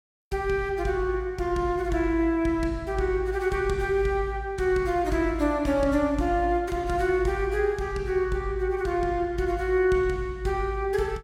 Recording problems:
none

